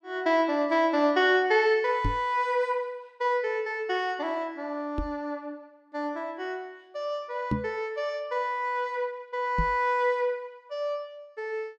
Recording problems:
microphone thump; 4 times, first at 2 s; peak +4 dB vs average level

